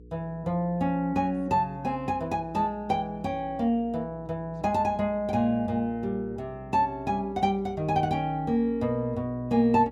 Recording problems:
hum; 60 Hz, harmonics up to 480 Hz, SNR 21 dB

